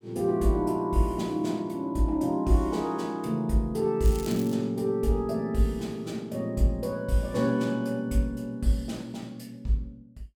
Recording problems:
crackle; at 4 s; loose cable, SNR 17 dB

